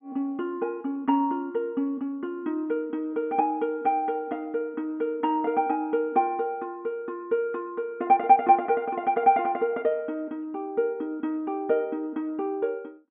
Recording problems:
treble cut off; nothing above 3.4 kHz

